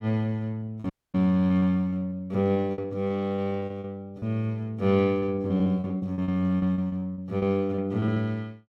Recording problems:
lost packets; 14% of the sound replaced, filled with repeated pitch periods
audio cutting out; at 1 s

